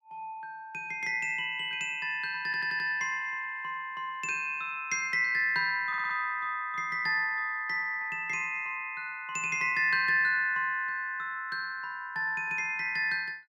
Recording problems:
audio stuttering; at 2.5 s and at 6 s

